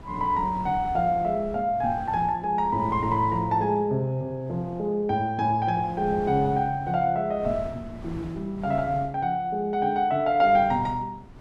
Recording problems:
wind noise; below 310 Hz, SNR 17 dB

